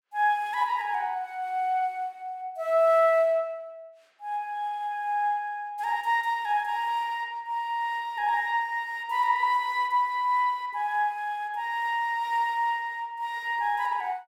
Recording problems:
none

